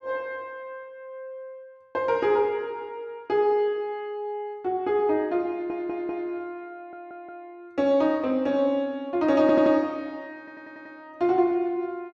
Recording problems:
audio stuttering; 4 times, first at 5.5 s

